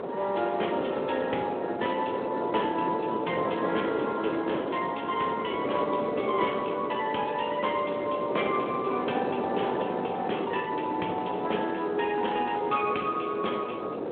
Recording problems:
telephone audio; 240 Hz to 3.4 kHz, Speex
wind on the microphone; below 620 Hz, SNR 4 dB

